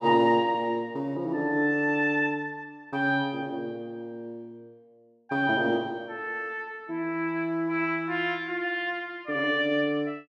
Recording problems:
none

